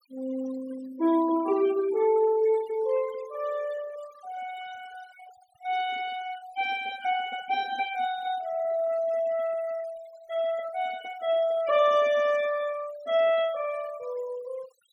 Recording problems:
noise reduction artefacts; signal-to-artefact ratio 19 dB

